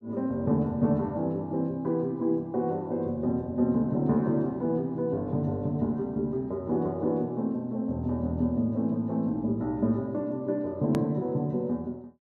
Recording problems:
hard cut with a click; at 11 s

